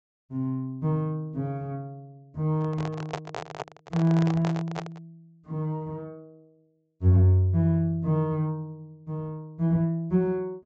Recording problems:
low-pass filter; nothing above 8 kHz
handling noise; from 2.5 to 5 s; peak -1 dB vs average level

